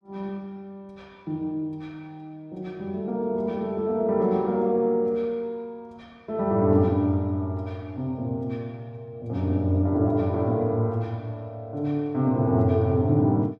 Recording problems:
none

